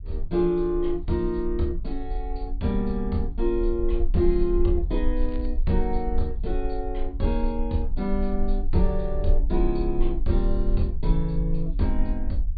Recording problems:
low-pass filter; nothing above 4.7 kHz
low-frequency rumble; below 40 Hz, strongest tone 20 Hz, SNR 3 dB
crackling; at 5 s; loose cable, SNR 29 dB

